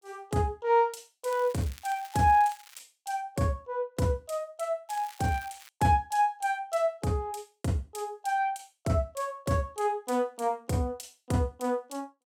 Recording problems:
crackle; from 1.5 to 3 s and at 5 s; loose cable, SNR 21 dB

